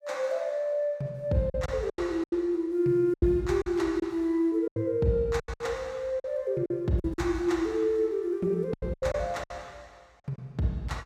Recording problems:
lost packets; 9% of the sound replaced, filled with silence

